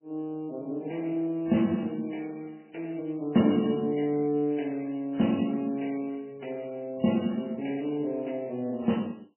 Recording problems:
lossy compression; MP3, log-spectral distance 4 dB, nothing above 2.9 kHz

